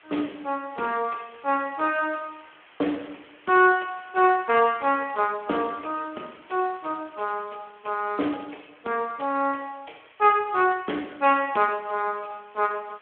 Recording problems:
telephone audio; 240 Hz to 3.3 kHz, Speex
hiss; SNR 27 dB

